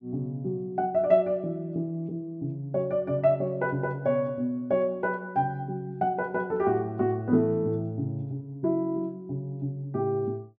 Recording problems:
none

